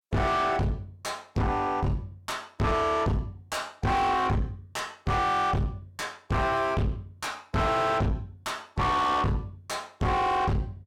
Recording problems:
distortion; soft clipping, signal-to-distortion ratio 5 dB

